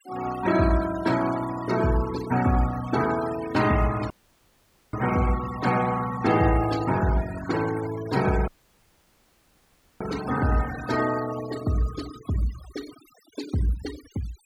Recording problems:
denoising artefacts; signal-to-artefact ratio 14 dB
dropout; at 4 s for 1 s and at 8.5 s for 1.5 s

